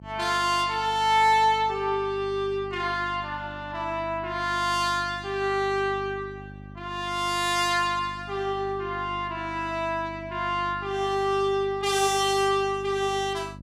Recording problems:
hum; 50 Hz, harmonics up to 600 Hz, SNR 17 dB

